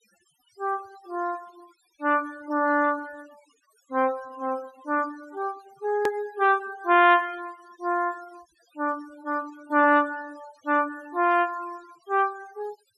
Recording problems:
denoising artefacts; signal-to-artefact ratio 24 dB
click at an edit; at 6 s

